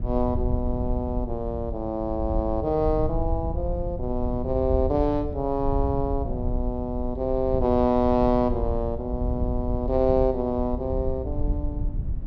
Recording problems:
low-frequency rumble; below 90 Hz, SNR 5 dB

